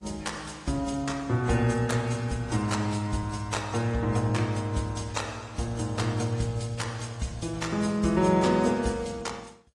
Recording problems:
lossy compression; AAC, then AAC, log-spectral distance 4 dB

